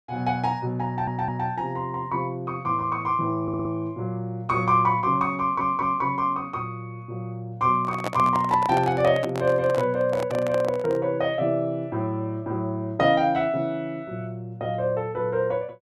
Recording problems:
stutter; at 1 s, at 3.5 s and at 5.5 s
handling noise; from 7.5 to 11 s; peak 0 dB vs average level

